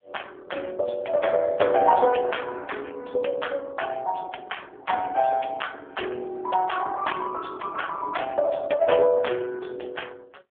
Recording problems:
phone line; 300 Hz to 3.4 kHz, AMR-NB

